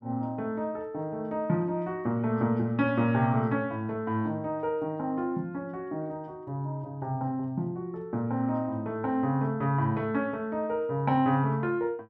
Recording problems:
none

